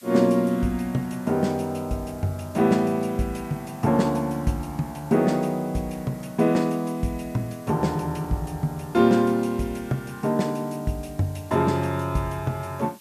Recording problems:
hiss; slope +4 dB per octave, SNR 25 dB

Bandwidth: 14.5 kHz